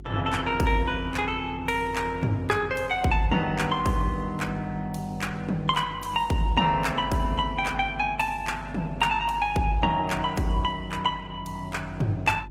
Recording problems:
codec artefacts; Opus, log-spectral distance 3 dB, nothing above 15.5 kHz
hum; 50 Hz, harmonics up to 400 Hz, SNR 17 dB

